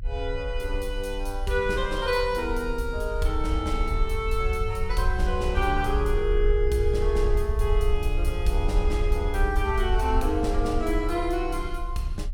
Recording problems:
rumble; below 58 Hz, strongest tone 32 Hz, SNR 2 dB

